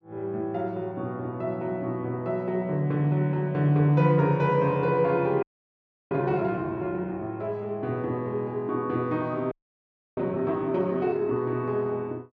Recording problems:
frozen audio; at 5.5 s for 0.5 s and at 9.5 s for 0.5 s

